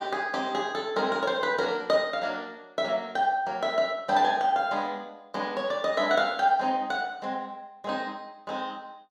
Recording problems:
none

